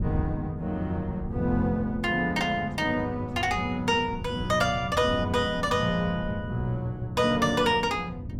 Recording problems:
wind noise; below 160 Hz, SNR 11 dB

